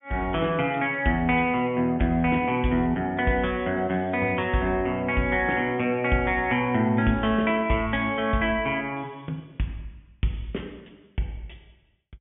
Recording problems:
low-pass filter; nothing above 3.4 kHz

